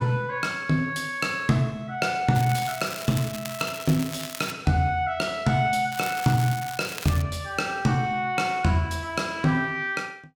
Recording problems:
crackling; from 2.5 to 4.5 s and from 6 to 7 s; loose cable, SNR 11 dB

